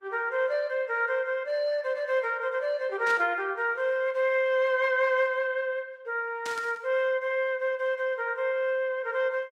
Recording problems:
lossy compression; Opus, log-spectral distance 2 dB
burst of static; at 3 s and at 6.5 s; peak -9 dB vs average level

